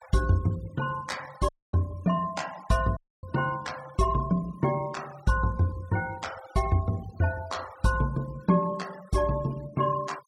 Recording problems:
noise reduction artefacts; signal-to-artefact ratio 21 dB
dropout; at 1.5 s and at 3 s

